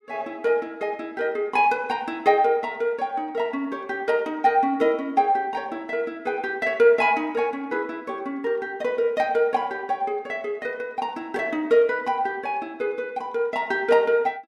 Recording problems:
none

